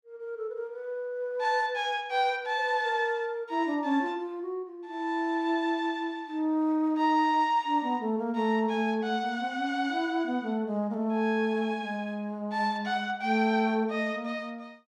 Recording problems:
none

